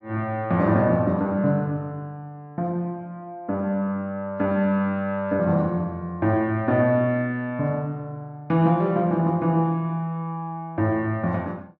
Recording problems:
none

